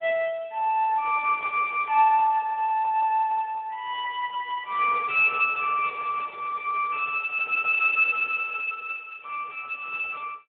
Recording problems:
phone line; 280 Hz to 3.3 kHz, Speex

